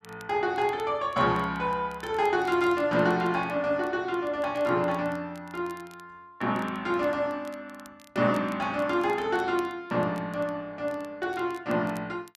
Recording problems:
crackle; vinyl, SNR 27 dB

